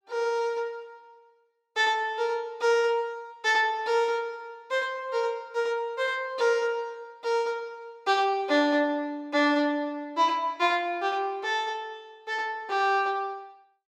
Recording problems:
none

